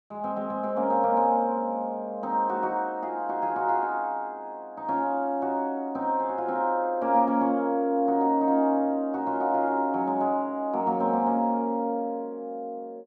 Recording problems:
none

